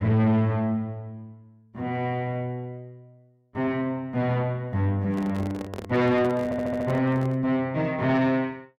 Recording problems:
distorted audio; soft clipping, signal-to-distortion ratio 8 dB
microphone handling noise; from 5 to 7.5 s; peak -5 dB vs average level
stutter; at 6.5 s

